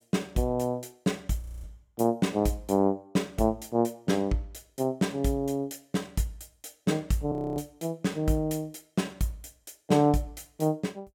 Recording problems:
frozen audio; at 1.5 s and at 7.5 s

